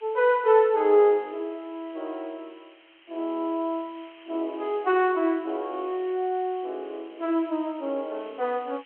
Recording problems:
phone line; 240 Hz to 3.4 kHz, G.726
hiss; SNR 27 dB

